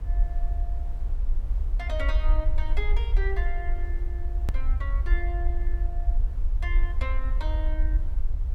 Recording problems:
hiss; slope -8 dB per octave, SNR 15 dB
low-frequency rumble; below 52 Hz, SNR -10 dB
hard cut with a click; at 4.5 s

